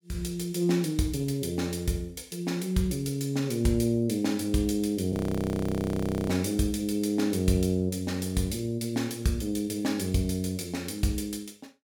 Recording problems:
audio freezing; at 5 s for 1 s

